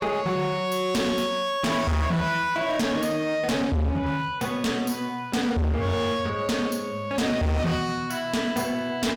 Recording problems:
distortion; hard clipping, signal-to-distortion ratio 7 dB

